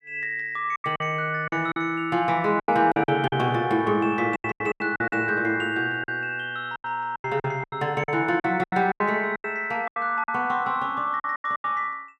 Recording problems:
lost packets; 14% of the sound replaced, filled with silence

